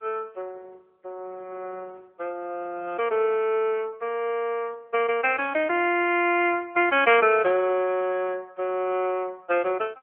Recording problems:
telephone audio; 320 Hz to 3.2 kHz, AMR-NB

